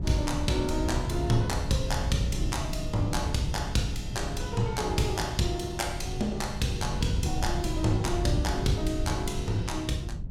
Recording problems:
hum; 60 Hz, harmonics up to 600 Hz, SNR 21 dB
wind noise; below 130 Hz, SNR 4 dB

